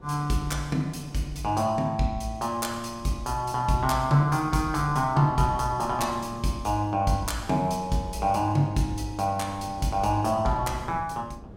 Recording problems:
wind noise; below 330 Hz, SNR 18 dB

